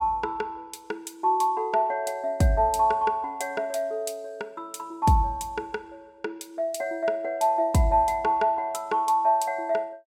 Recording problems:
none

